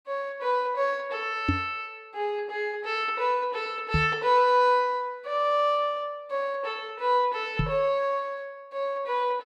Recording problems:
knock on the microphone; at 1.5 s, at 4 s and at 7.5 s; peak +5 dB vs average level

